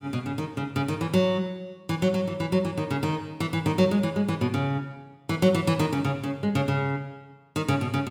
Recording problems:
none

